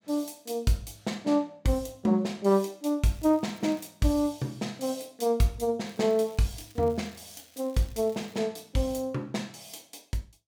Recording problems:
crackling; at 3 s and from 6 to 8.5 s; loose cable, SNR 26 dB

